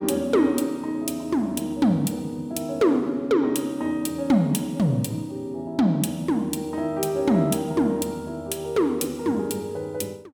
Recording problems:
none

